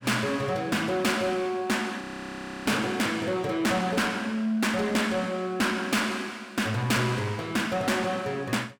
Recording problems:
distorted audio; soft clipping, signal-to-distortion ratio 11 dB
audio freezing; at 2 s for 0.5 s

